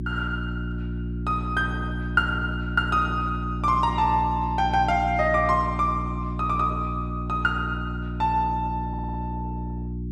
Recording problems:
electrical hum; 60 Hz, harmonics up to 360 Hz, SNR 5 dB
stutter; at 9 s

